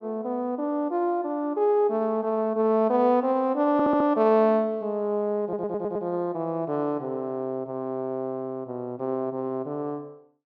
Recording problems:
stutter; at 3.5 s and at 5.5 s

